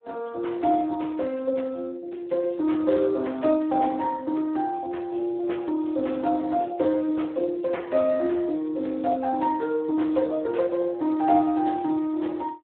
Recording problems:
phone line; 220 Hz to 3.6 kHz, Speex

